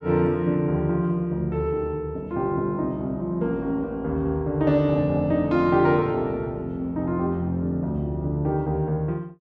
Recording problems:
none

